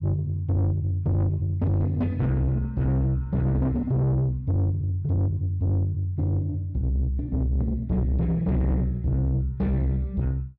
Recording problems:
distortion; soft clipping, signal-to-distortion ratio 7 dB

